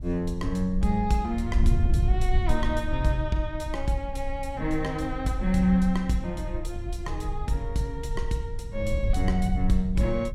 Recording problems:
wind on the microphone; below 74 Hz, SNR 3 dB

